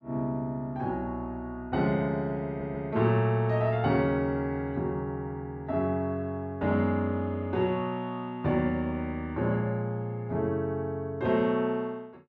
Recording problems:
audio stuttering; at 2.5 s

